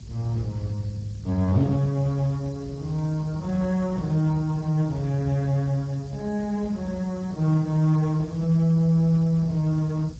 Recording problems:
lossy codec; Speex, log-spectral distance 4 dB, nothing above 16 kHz
hiss; slope +3 dB per octave, SNR 29 dB
low-frequency rumble; below 160 Hz, SNR 16 dB

